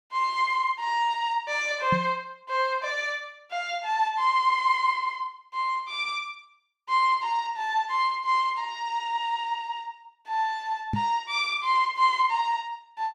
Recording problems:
microphone bump; at 2 s and at 11 s; peak +2 dB vs average level

